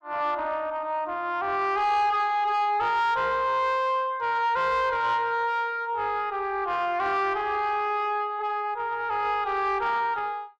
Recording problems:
distortion; soft clipping, signal-to-distortion ratio 10 dB

